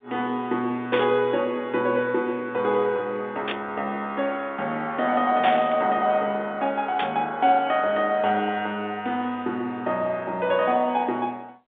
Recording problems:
phone line; 220 Hz to 3.8 kHz, G.711
burst of static; 4 times, first at 1 s; peak 0 dB vs average level

